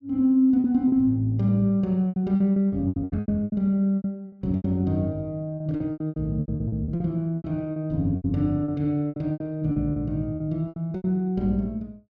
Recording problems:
lost packets; 16% of the sound replaced, filled with repeated pitch periods

